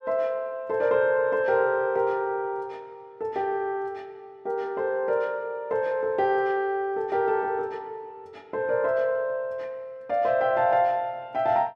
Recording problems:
none

